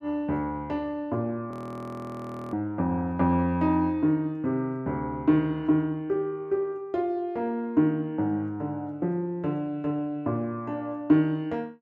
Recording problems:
frozen audio; at 1.5 s for 1 s

